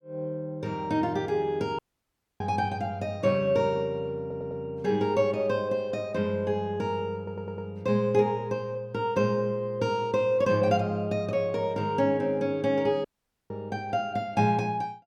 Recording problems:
dropout; at 2 s for 0.5 s and at 13 s
audio stuttering; at 4 s and at 7 s

